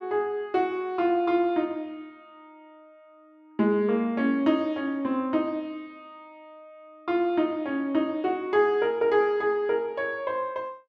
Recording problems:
none

